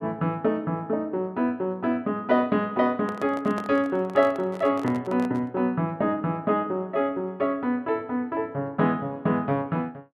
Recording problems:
microphone handling noise; from 3 to 5.5 s; peak -6 dB vs average level

